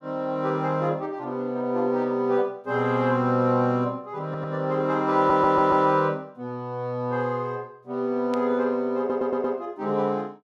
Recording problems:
stutter; at 4.5 s, at 5 s and at 9 s
burst of static; at 8.5 s; peak -12 dB vs average level

